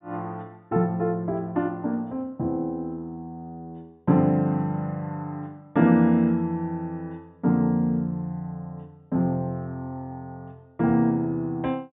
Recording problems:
treble cut off; nothing above 4 kHz

